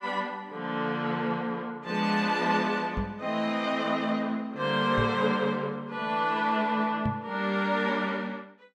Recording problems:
microphone bump; at 3 s, at 5 s and at 7 s; peak +1 dB vs average level

